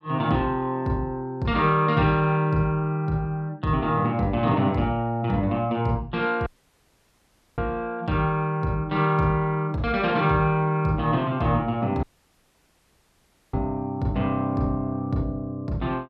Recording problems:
audio cutting out; at 6.5 s for 1 s and at 12 s for 1.5 s

